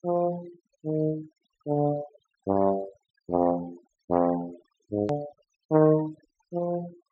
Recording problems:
low-pass filter; nothing above 8 kHz
noise reduction artefacts; signal-to-artefact ratio 20 dB
edit click; at 5 s

